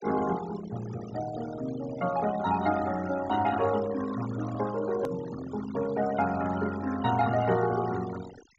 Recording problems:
treble missing; nothing above 7.4 kHz
noise reduction artefacts; signal-to-artefact ratio 14 dB
edit click; at 5 s

